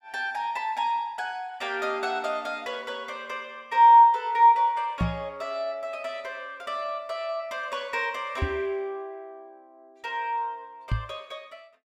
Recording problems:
microphone thump; at 5 s, at 8.5 s and at 11 s; peak +3 dB vs average level

